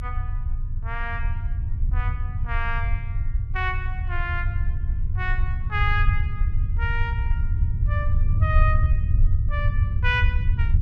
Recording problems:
low-frequency rumble; below 86 Hz, strongest tone 26 Hz, SNR -5 dB

